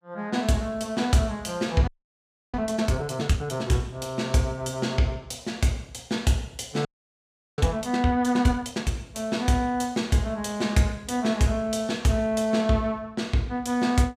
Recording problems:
audio freezing; at 2 s for 0.5 s and at 7 s for 0.5 s

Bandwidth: 15.5 kHz